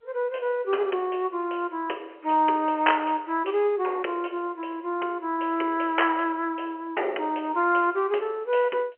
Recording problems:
phone line; 320 Hz to 3.1 kHz, G.711

